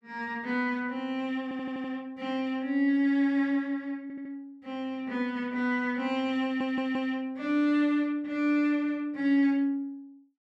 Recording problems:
stutter; at 1.5 s, at 4 s and at 6.5 s

